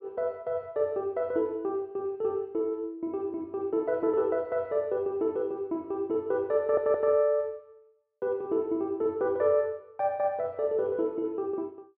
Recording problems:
audio stuttering; at 6.5 s

